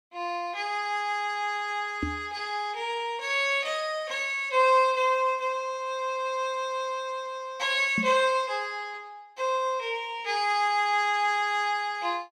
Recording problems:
knock on the microphone; at 2 s and at 8 s; peak 0 dB vs average level

